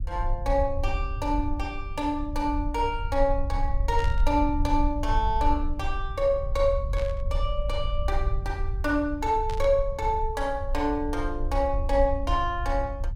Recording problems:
rumble; below 60 Hz, SNR 4 dB
burst of static; at 4 s, at 7 s and at 9.5 s; peak -9 dB vs average level

